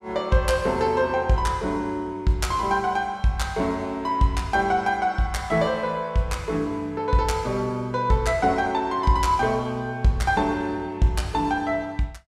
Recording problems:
none

